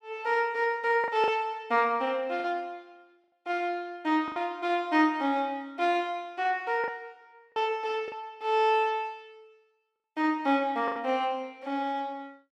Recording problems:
packet loss; 4% of the sound replaced, filled with the last packet

